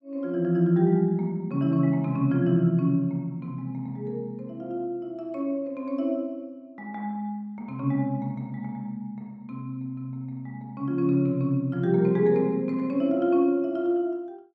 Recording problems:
none

